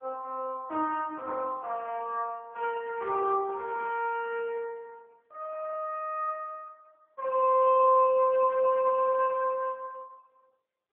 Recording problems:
telephone audio; 280 Hz to 3.1 kHz, AMR-NB

